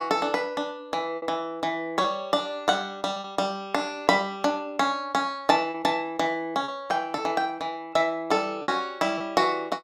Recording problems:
lost packets; 3% of the sound replaced, filled with repeated pitch periods

